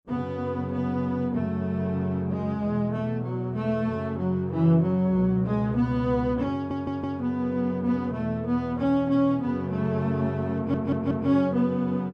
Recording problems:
stutter; at 6.5 s and at 11 s

